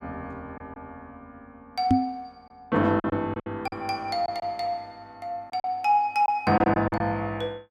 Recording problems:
lost packets; 6% of the sound replaced, filled with silence
knock on the microphone; at 2 s; peak +9 dB vs average level

